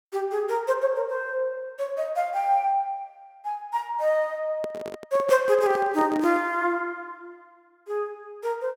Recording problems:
microphone handling noise; from 4.5 to 6.5 s; peak -6 dB vs average level

